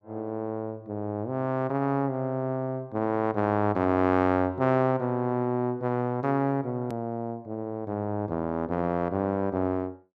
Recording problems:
click at an edit; at 7 s

